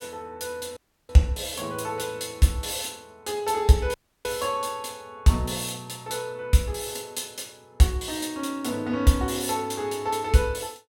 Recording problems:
dropout; at 1 s and at 4 s

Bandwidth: 17 kHz